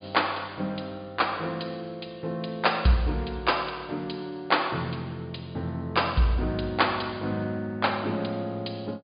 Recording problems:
treble missing; nothing above 4.9 kHz

